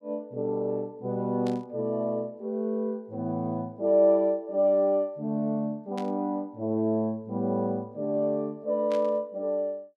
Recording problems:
static burst; at 1.5 s, at 6 s and at 9 s; peak -11 dB vs average level

